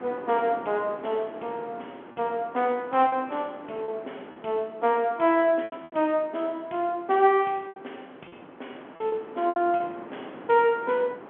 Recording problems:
telephone audio; 260 Hz to 3.5 kHz, G.711
wind on the microphone; below 960 Hz, SNR 18 dB
packet loss; 6% of the sound replaced, filled with repeated pitch periods

